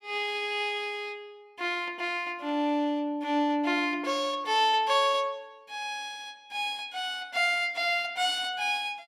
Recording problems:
none

